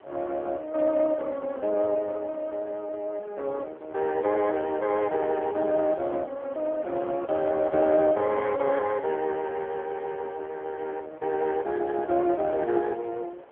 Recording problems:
telephone audio; 320 Hz to 2.8 kHz, AMR-NB
wind on the microphone; below 890 Hz, SNR 22 dB

